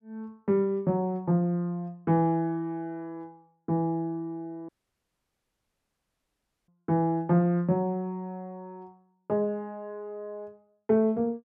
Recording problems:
audio cutting out; at 4.5 s for 2 s

